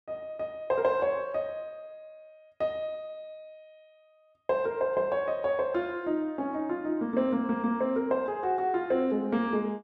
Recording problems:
none

